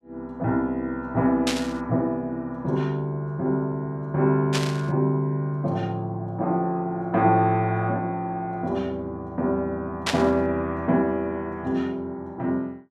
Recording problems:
static burst; at 1.5 s, at 4.5 s and at 10 s; peak +5 dB vs average level

